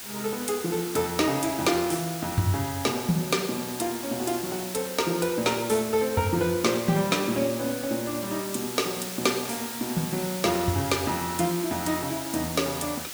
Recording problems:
hiss; slope +1 dB per octave, SNR 8 dB

